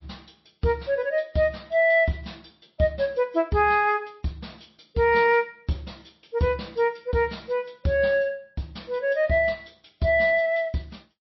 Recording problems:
lossy codec; MP3, log-spectral distance 3 dB, nothing above 5.5 kHz

